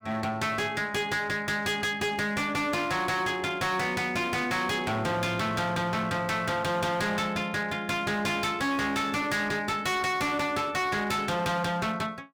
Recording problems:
distortion; hard clipping, signal-to-distortion ratio 7 dB

